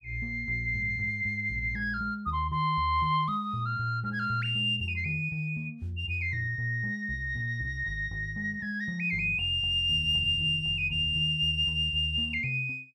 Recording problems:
none

